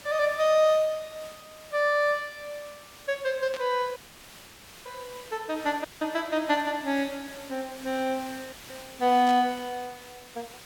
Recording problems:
background hiss; slope -1 dB per octave, SNR 19 dB
static burst; at 3.5 s and at 9.5 s; peak -9 dB vs average level
dropout; at 4 s for 1 s, at 6 s and at 8.5 s

